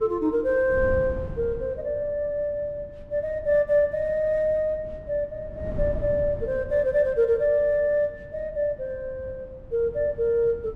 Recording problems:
wind noise; below 160 Hz, SNR 15 dB

